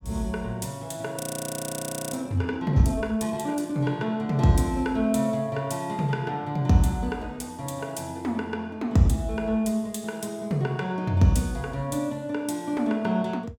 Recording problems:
frozen audio; at 1 s for 1 s

